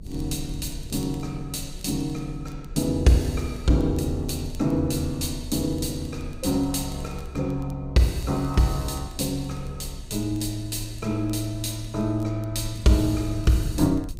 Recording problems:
rumble; below 66 Hz, strongest tone 34 Hz, SNR 15 dB
crackle; vinyl, SNR 30 dB

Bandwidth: 15.5 kHz